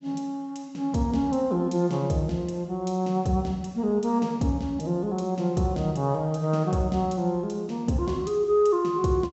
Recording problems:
treble cut off; nothing above 7.8 kHz

